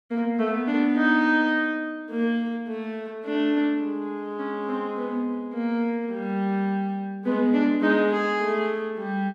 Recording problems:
none

